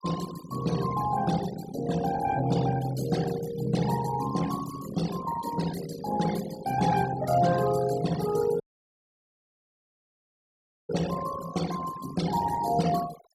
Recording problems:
noise reduction artefacts; signal-to-artefact ratio 11 dB
audio cutting out; at 8.5 s for 2.5 s

